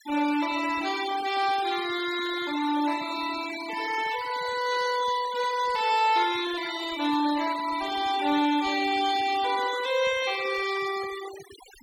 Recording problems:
noise reduction artefacts; signal-to-artefact ratio 13 dB

